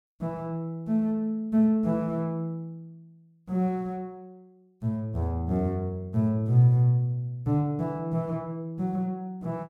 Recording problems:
none

